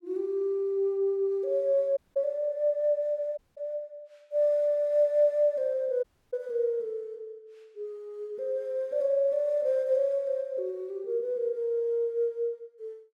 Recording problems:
dropout; at 2 s, at 3.5 s and at 6 s

